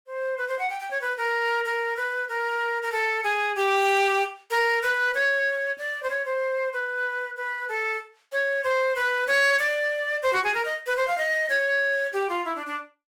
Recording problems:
distortion; soft clipping, signal-to-distortion ratio 12 dB

